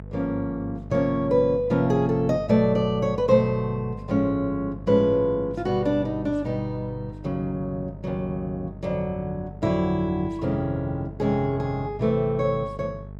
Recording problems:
hum; 50 Hz, harmonics up to 850 Hz, SNR 15 dB

